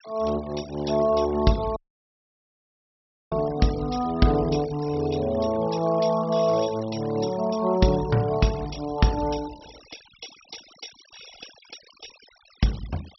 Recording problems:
treble cut off; nothing above 5.7 kHz
denoising artefacts; signal-to-artefact ratio 20 dB
audio cutting out; at 2 s for 1.5 s

